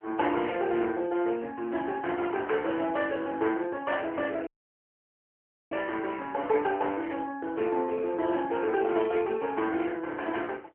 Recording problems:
phone line; 240 Hz to 3.2 kHz, AMR-NB
audio cutting out; at 4.5 s for 1 s
burst of static; at 8.5 s and at 10 s; peak -14 dB vs average level

